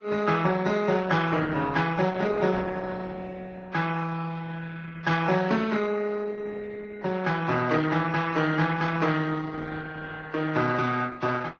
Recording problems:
codec artefacts; Vorbis, then Opus, log-spectral distance 4 dB

